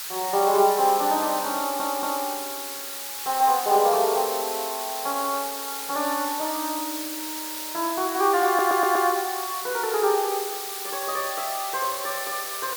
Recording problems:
hiss; slope +3 dB per octave, SNR 6 dB
audio stuttering; at 1.5 s and at 8.5 s

